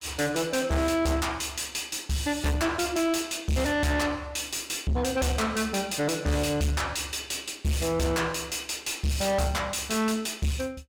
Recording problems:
distortion; soft clipping, signal-to-distortion ratio 7 dB

